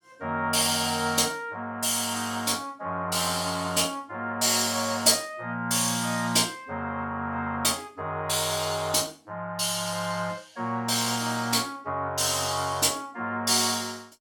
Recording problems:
none

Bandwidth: 17.5 kHz